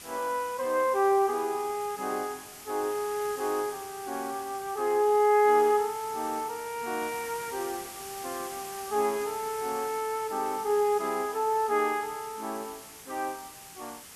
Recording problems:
background hiss; slope 0 dB per octave, SNR 14 dB

